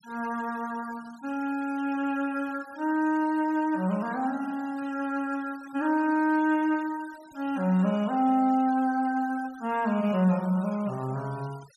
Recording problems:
denoising artefacts; signal-to-artefact ratio 24 dB

